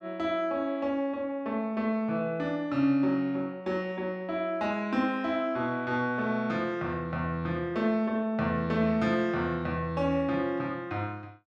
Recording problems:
none

